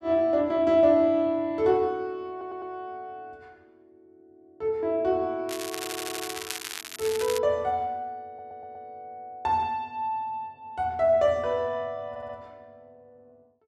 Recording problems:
stutter; 4 times, first at 2.5 s
crackling; from 5.5 to 7.5 s; loose cable, SNR 9 dB

